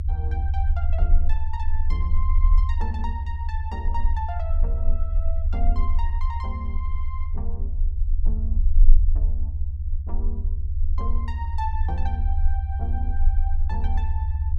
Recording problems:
low-frequency rumble; below 62 Hz, strongest tone 18 Hz, SNR -12 dB

